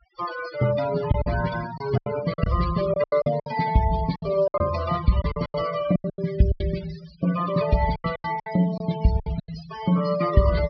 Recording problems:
treble cut off; nothing above 5.5 kHz
noise reduction artefacts; signal-to-artefact ratio 12 dB
packet loss; 13% of the sound replaced, filled with silence

